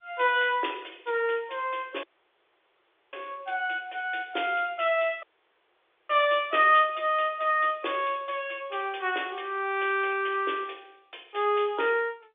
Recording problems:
phone line; 300 Hz to 3.6 kHz, G.711
dropout; at 2 s for 1 s and at 5 s for 1 s

